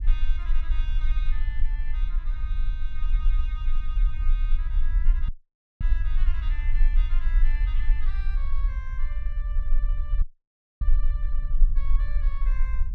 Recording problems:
rumble; below 36 Hz, strongest tone 22 Hz, SNR -18 dB
dropout; at 5.5 s for 0.5 s and at 10 s for 0.5 s

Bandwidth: 12.5 kHz